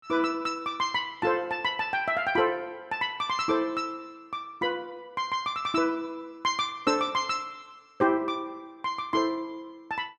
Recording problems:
none

